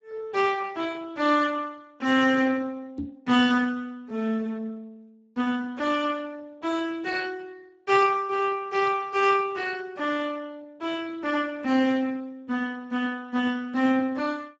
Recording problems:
lossy compression; Speex, log-spectral distance 3 dB, nothing above 7.3 kHz
knock on the microphone; at 3 s; peak -3 dB vs average level

